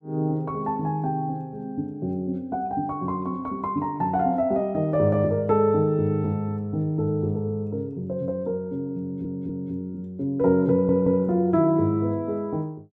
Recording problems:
stutter; at 9 s and at 11 s

